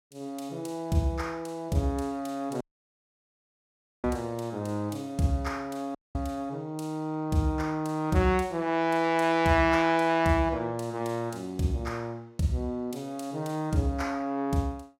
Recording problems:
audio cutting out; at 2.5 s for 1.5 s and at 6 s

